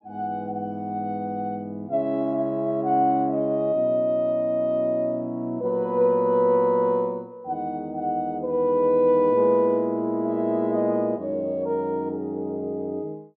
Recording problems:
none

